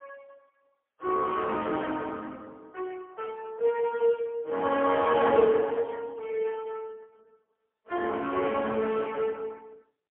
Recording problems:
phone line; 260 Hz to 3.3 kHz, AMR-NB, then MP3

